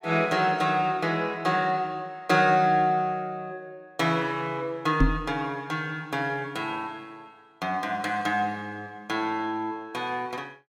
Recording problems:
microphone thump; at 5 s; peak +8 dB vs average level

